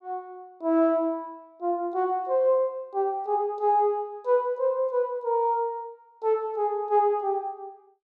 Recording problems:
none

